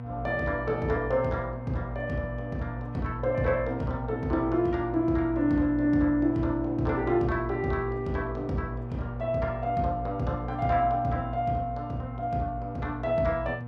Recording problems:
hum; 60 Hz, harmonics up to 1.1 kHz, SNR 9 dB

